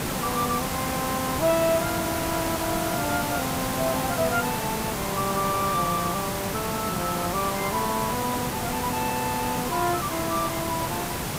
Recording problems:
hiss; slope -4 dB per octave, SNR 1 dB

